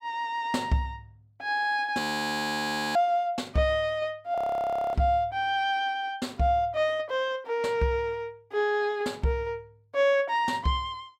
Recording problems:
frozen audio; at 2 s for 1 s and at 4.5 s for 0.5 s

